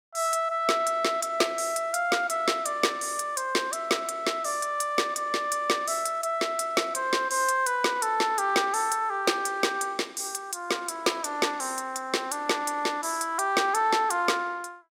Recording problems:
none

